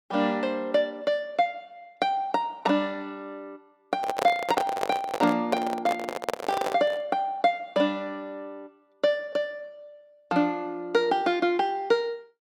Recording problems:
microphone handling noise; from 4 to 7 s; peak +4 dB vs average level

